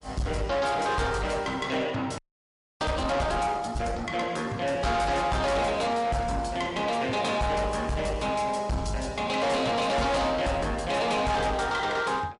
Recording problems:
codec artefacts; MP3, log-spectral distance 2 dB, nothing above 11 kHz
distortion; soft clipping, signal-to-distortion ratio 8 dB
audio freezing; at 2 s for 0.5 s

